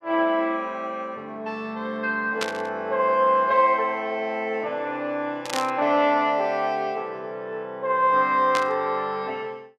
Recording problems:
static burst; at 2.5 s, at 5.5 s and at 8.5 s; peak +1 dB vs average level

